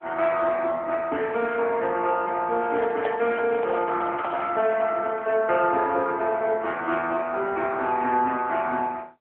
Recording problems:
phone line; 240 Hz to 3.3 kHz, AMR-NB
handling noise; from 2.5 to 4.5 s; peak -5 dB vs average level

